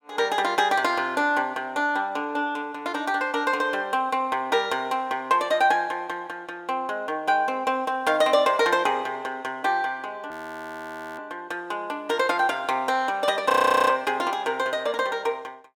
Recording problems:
frozen audio; at 10 s for 1 s and at 14 s

